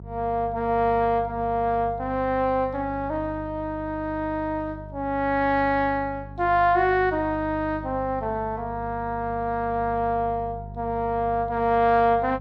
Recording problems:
hum; 50 Hz, harmonics up to 450 Hz, SNR 15 dB

